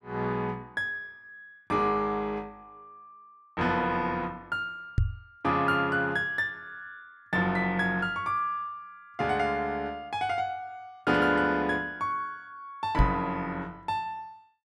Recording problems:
microphone thump; at 5 s and at 13 s; peak +8 dB vs average level

